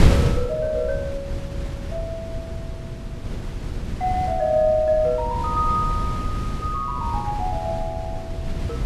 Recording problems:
mains hum; 60 Hz, harmonics up to 1.4 kHz, SNR 21 dB
wind on the microphone; below 160 Hz, SNR 5 dB

